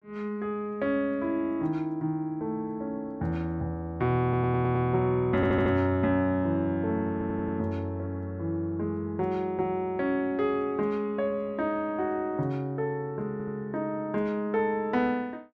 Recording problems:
audio stuttering; 4 times, first at 4 s

